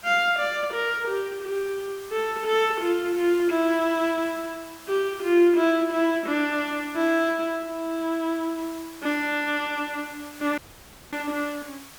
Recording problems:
hiss; slope -1 dB per octave, SNR 19 dB
audio cutting out; at 11 s for 0.5 s

